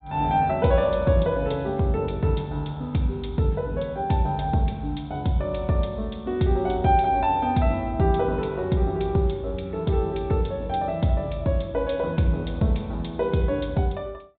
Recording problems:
low-pass filter; nothing above 4 kHz

